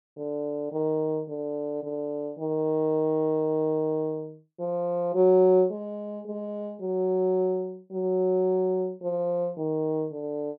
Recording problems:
none

